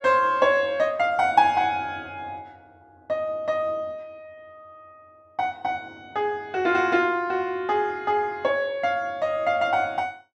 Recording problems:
none

